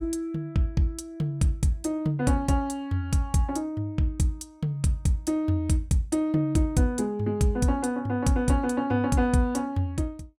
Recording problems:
none

